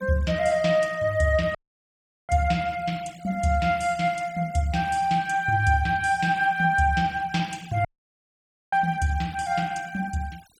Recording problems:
denoising artefacts; signal-to-artefact ratio 24 dB
audio cutting out; at 1.5 s for 0.5 s and at 8 s for 1 s

